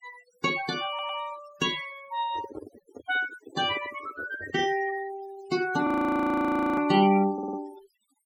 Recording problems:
noise reduction artefacts; signal-to-artefact ratio 16 dB
stutter; at 1 s and at 7.5 s
microphone handling noise; from 2 to 4.5 s; peak -7 dB vs average level
frozen audio; at 6 s for 1 s

